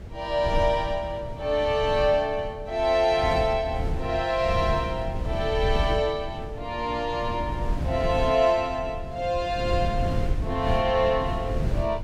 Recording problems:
wind noise; below 130 Hz, SNR 7 dB

